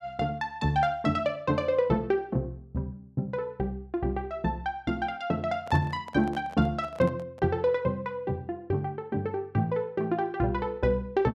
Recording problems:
microphone handling noise; from 5.5 to 7.5 s; peak -8 dB vs average level

